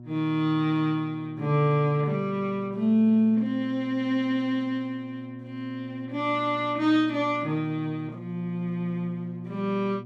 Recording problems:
hum; 60 Hz, harmonics up to 720 Hz, SNR 16 dB

